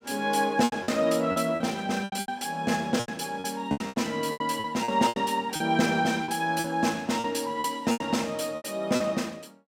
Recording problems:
packet loss; 14% of the sound replaced, filled with repeated pitch periods

